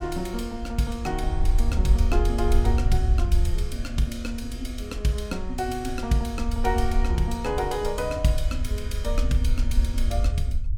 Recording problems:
low-frequency rumble; below 68 Hz, SNR -1 dB

